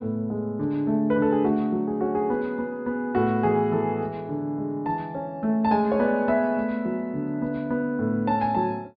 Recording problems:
treble cut off; nothing above 5.5 kHz

